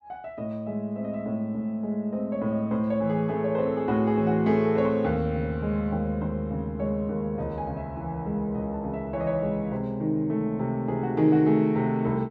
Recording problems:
none

